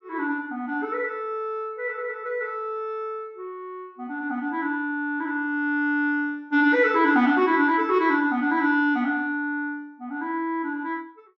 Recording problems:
treble cut off; nothing above 8 kHz

